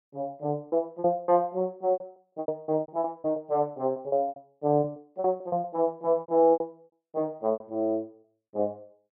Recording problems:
packet loss; 17% of the sound replaced, filled with repeated pitch periods

